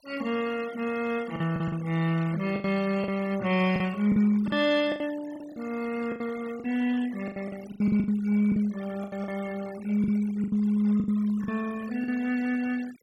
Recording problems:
noise reduction artefacts; signal-to-artefact ratio 18 dB
packet loss; 11% of the sound replaced, filled with the last packet

